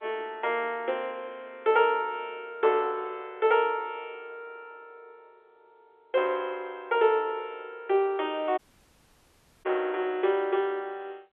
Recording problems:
telephone audio; 320 Hz to 3.5 kHz, G.711
dropout; at 8.5 s for 1 s

